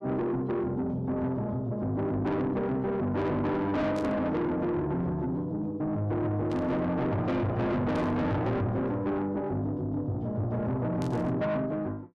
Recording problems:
distorted audio; soft clipping, signal-to-distortion ratio 7 dB
burst of static; 4 times, first at 4 s; peak -12 dB vs average level

